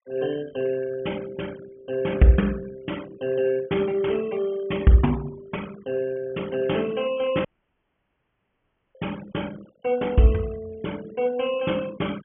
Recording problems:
treble cut off; nothing above 3.3 kHz
noise reduction artefacts; signal-to-artefact ratio 20 dB
audio cutting out; at 7.5 s for 1.5 s

